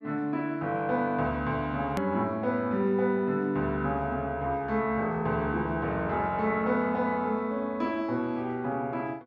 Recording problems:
hard cut with a click; at 2 s

